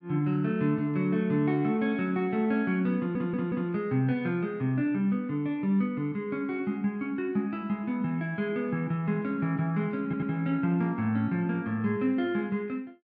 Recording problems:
stutter; at 3 s and at 10 s

